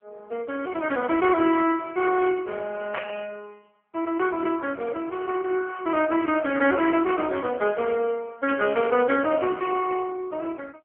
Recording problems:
phone line; 280 Hz to 2.3 kHz, AMR-NB
burst of static; at 3 s and at 8.5 s; peak -3 dB vs average level

